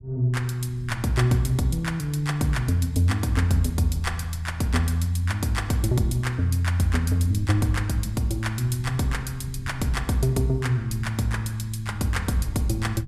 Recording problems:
low-frequency rumble; below 120 Hz, SNR 17 dB

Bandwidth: 15 kHz